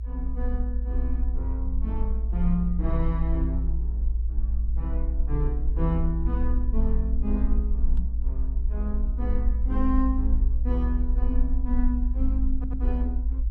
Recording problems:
low-frequency rumble; below 58 Hz, SNR -5 dB
microphone bump; at 8 s; peak +4 dB vs average level
audio stuttering; at 13 s

